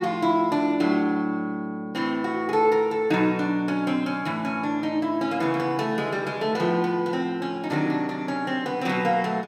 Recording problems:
none

